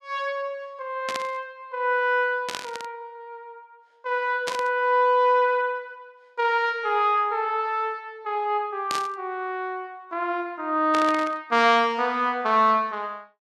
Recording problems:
static burst; 5 times, first at 1 s; peak -2 dB vs average level

